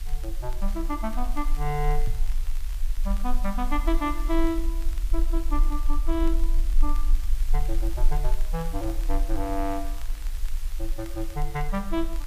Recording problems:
hiss; slope 0 dB per octave, SNR 15 dB
low-frequency rumble; below 34 Hz, strongest tone 20 Hz, SNR -2 dB
crackling; vinyl, SNR 21 dB
knock on the microphone; at 2 s; peak +3 dB vs average level

